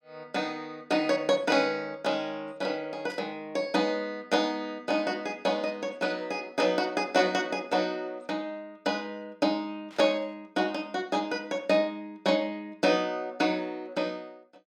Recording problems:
burst of static; at 3 s and at 10 s; peak -14 dB vs average level

